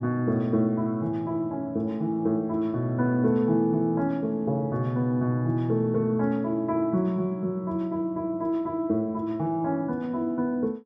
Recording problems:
none

